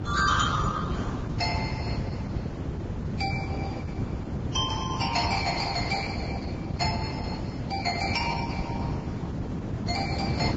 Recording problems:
lossy codec; Opus, then Vorbis, log-spectral distance 4 dB, nothing above 7.3 kHz
wind noise; below 270 Hz, SNR 2 dB

